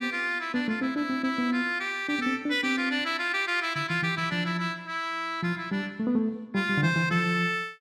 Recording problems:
none

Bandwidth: 14.5 kHz